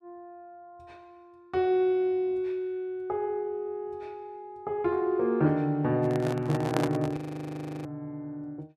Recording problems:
microphone handling noise; from 6 to 7 s; peak +3 dB vs average level
frozen audio; at 7 s for 0.5 s

